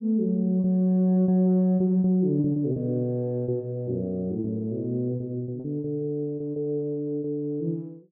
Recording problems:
packet loss; 8% of the sound replaced, filled with repeated pitch periods

